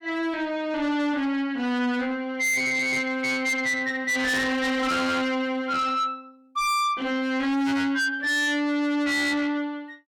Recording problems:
distorted audio; soft clipping, signal-to-distortion ratio 6 dB

